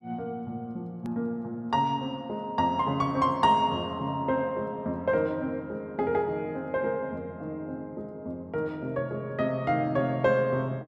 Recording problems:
click at an edit; at 1 s

